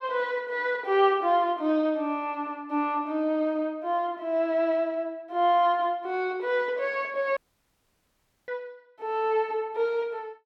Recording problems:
dropout; at 7.5 s for 1 s

